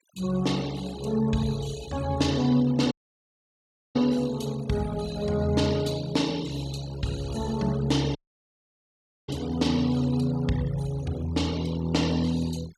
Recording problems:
noise reduction artefacts; signal-to-artefact ratio 17 dB
audio cutting out; at 3 s for 1 s and at 8 s for 1 s

